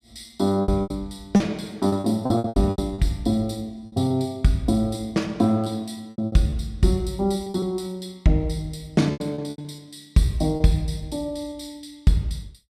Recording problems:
lost packets; 10% of the sound replaced, filled with repeated pitch periods

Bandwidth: 15 kHz